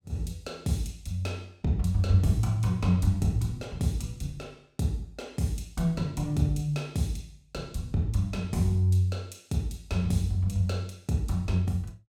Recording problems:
none

